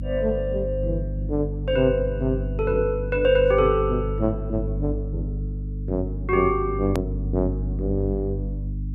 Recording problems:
hum; 50 Hz, harmonics up to 300 Hz, SNR 5 dB
hard cut with a click; at 7 s

